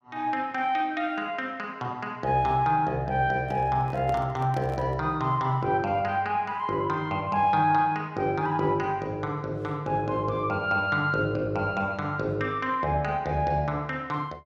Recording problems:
microphone handling noise; from 3.5 to 5 s; peak -8 dB vs average level

